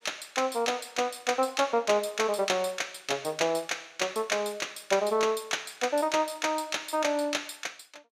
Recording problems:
none

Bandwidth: 15 kHz